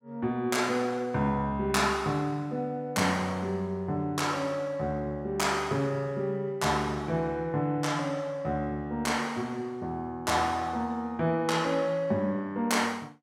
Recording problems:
none

